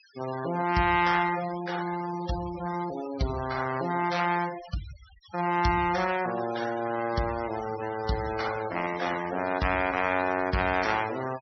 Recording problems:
treble missing; nothing above 5.9 kHz
denoising artefacts; signal-to-artefact ratio 13 dB

